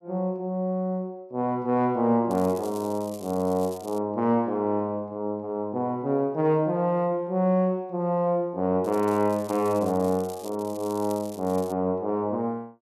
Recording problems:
crackling; from 2.5 to 4 s and from 9 to 12 s; loose cable, SNR 20 dB

